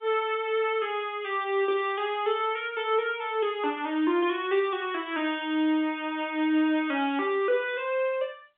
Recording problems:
telephone audio; 220 Hz to 3.6 kHz, G.711

